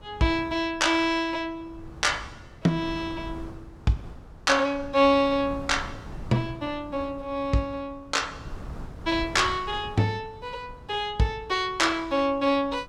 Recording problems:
wind noise; below 230 Hz, SNR 17 dB

